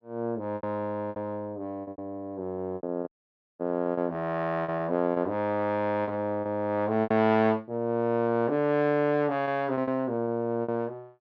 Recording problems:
packet loss; 10% of the sound replaced, filled with repeated pitch periods
dropout; at 3 s for 0.5 s

